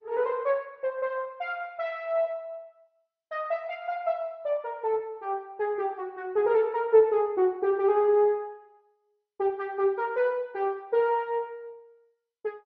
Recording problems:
lossy compression; Opus, then MP2, log-spectral distance 2 dB

